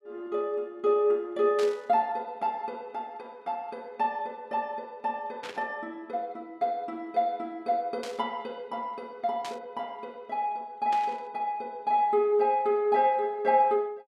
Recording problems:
burst of static; 5 times, first at 1.5 s; peak -6 dB vs average level

